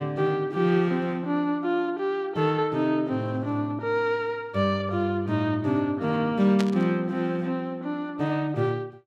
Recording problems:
burst of static; at 6.5 s; peak -3 dB vs average level

